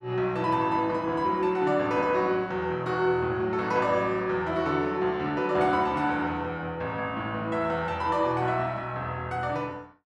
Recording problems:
none

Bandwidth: 12 kHz